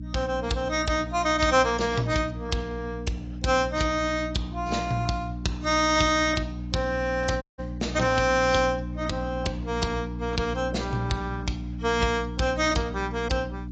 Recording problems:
lossy codec; AAC, log-spectral distance 3 dB, nothing above 7.3 kHz
electrical hum; 60 Hz, harmonics up to 300 Hz, SNR 9 dB
audio cutting out; at 7.5 s

